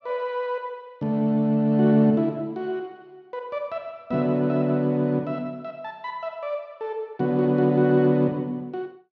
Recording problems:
none

